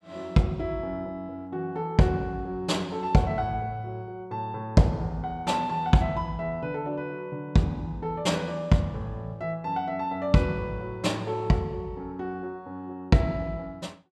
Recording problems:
none

